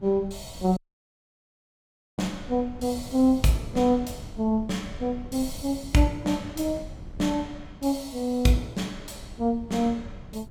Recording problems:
wind noise; below 140 Hz, SNR 17 dB
audio cutting out; at 1 s for 1.5 s

